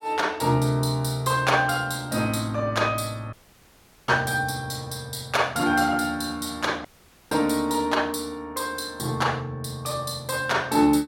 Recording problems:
dropout; at 3.5 s for 1 s and at 7 s

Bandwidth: 17 kHz